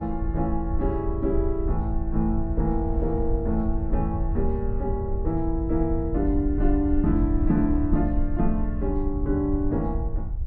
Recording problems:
rumble; below 70 Hz, SNR 3 dB
wind on the microphone; below 370 Hz, SNR 21 dB

